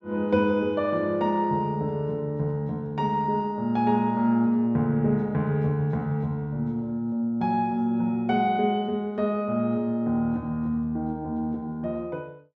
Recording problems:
none

